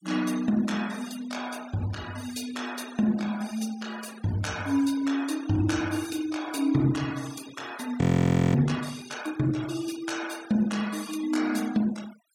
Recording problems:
denoising artefacts; signal-to-artefact ratio 16 dB
audio freezing; at 8 s for 0.5 s

